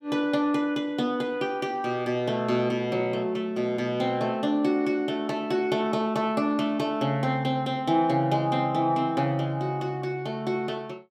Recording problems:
none

